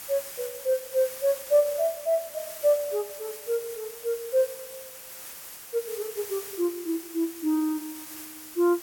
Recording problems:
background hiss; slope 0 dB per octave, SNR 11 dB

